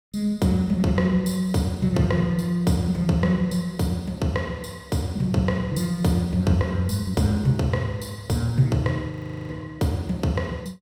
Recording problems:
frozen audio; at 9 s

